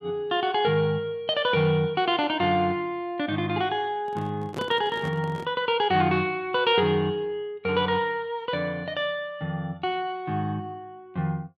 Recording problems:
handling noise; from 4 to 5.5 s; peak -4 dB vs average level

